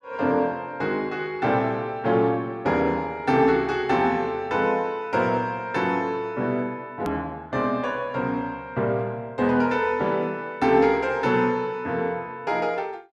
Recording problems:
hard cut with a click; at 7 s

